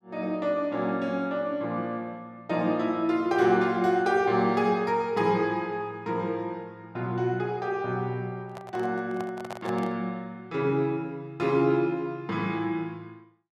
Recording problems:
microphone handling noise; from 8.5 to 10 s; peak -6 dB vs average level

